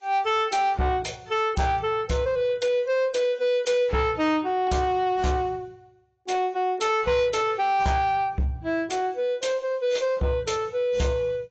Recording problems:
lossy compression; AAC, log-spectral distance 2 dB
distorted audio; soft clipping, signal-to-distortion ratio 11 dB

